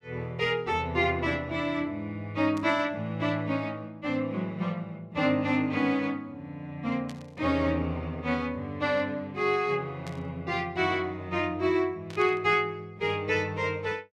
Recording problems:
static burst; 4 times, first at 2.5 s; peak -11 dB vs average level

